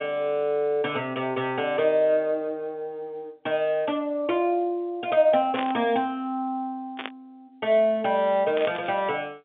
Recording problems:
phone line; 170 Hz to 3.7 kHz, G.711
burst of static; at 5.5 s, at 7 s and at 8.5 s; peak -3 dB vs average level

